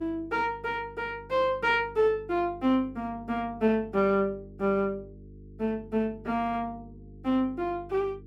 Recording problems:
hum; 50 Hz, harmonics up to 450 Hz, SNR 20 dB

